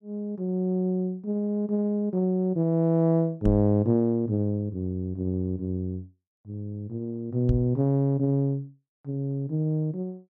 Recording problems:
microphone bump; at 3.5 s and at 7.5 s; peak +2 dB vs average level

